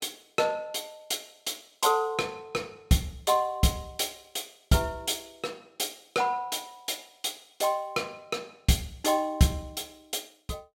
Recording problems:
none

